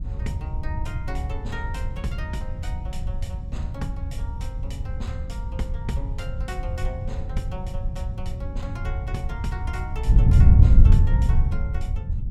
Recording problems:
wind on the microphone; below 94 Hz, SNR -12 dB

